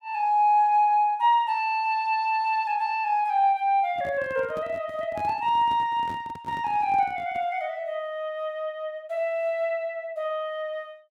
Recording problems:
microphone handling noise; from 4 to 7.5 s; peak -11 dB vs average level

